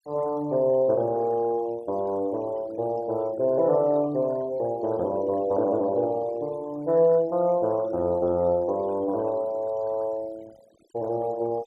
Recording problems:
denoising artefacts; signal-to-artefact ratio 26 dB

